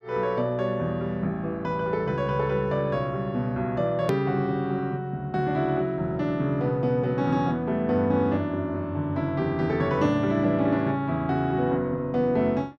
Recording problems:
click at an edit; at 4 s

